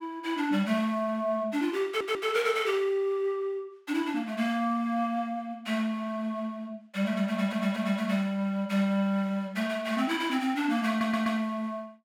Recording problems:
audio stuttering; at 2 s, at 7.5 s and at 11 s

